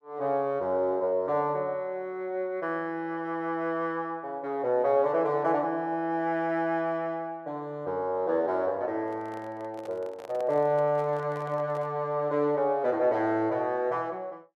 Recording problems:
handling noise; from 9 to 12 s; peak -10 dB vs average level

